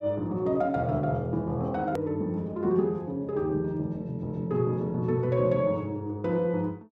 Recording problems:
hard cut with a click; at 2 s

